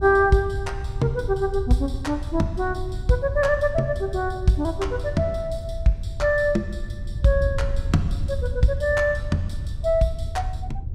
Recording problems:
wind on the microphone; below 90 Hz, SNR 7 dB

